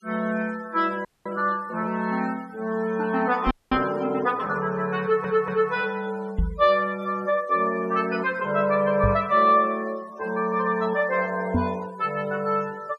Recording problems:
noise reduction artefacts; signal-to-artefact ratio 22 dB
frozen audio; at 1 s and at 3.5 s
microphone bump; 4 times, first at 3.5 s; peak +4 dB vs average level
audio stuttering; at 5 s

